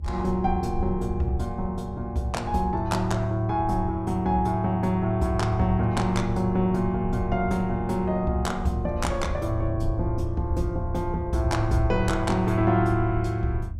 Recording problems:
rumble; below 80 Hz, SNR 9 dB

